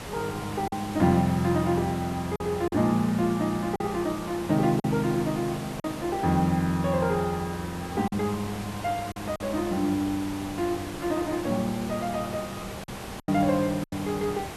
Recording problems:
background hiss; slope -5 dB per octave, SNR 11 dB
packet loss; 4% of the sound replaced, filled with silence

